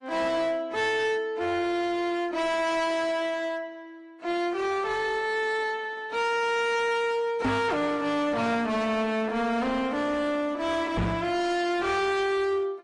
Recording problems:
lossy compression; AAC, then MP3, log-spectral distance 2 dB, nothing above 10.4 kHz
distorted audio; hard clipping, signal-to-distortion ratio 7 dB
microphone thump; at 7.5 s and at 11 s; peak +4 dB vs average level

